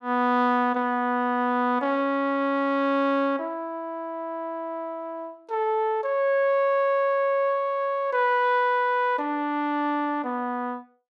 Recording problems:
none

